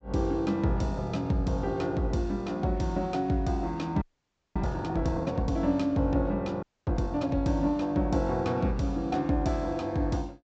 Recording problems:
treble missing; nothing above 8 kHz
frozen audio; at 4 s for 0.5 s and at 6.5 s

